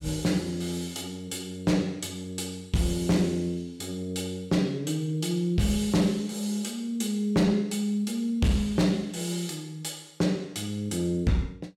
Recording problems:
distortion; hard clipping, uneven, signal-to-distortion ratio 12 dB

